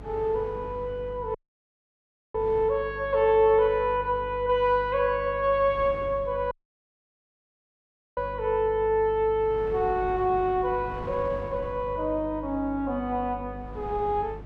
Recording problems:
mains hum; 50 Hz, harmonics up to 500 Hz, SNR 17 dB
wind on the microphone; below 690 Hz, SNR 20 dB
audio cutting out; at 1.5 s for 1 s and at 6.5 s for 1.5 s

